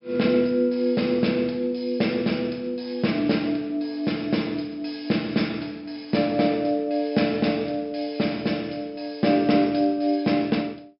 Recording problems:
treble cut off; nothing above 5.3 kHz

